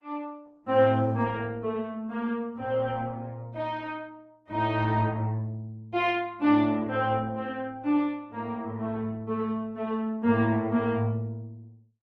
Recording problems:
lossy compression; Opus, log-spectral distance 2 dB

